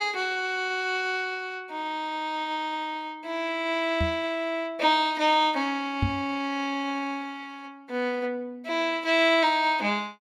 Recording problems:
microphone thump; at 4 s and at 6 s; peak +4 dB vs average level

